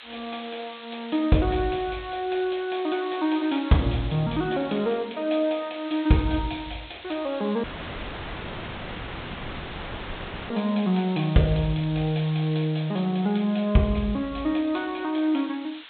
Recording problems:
treble cut off; nothing above 4 kHz
background hiss; SNR 18 dB
dropout; at 7.5 s for 3 s

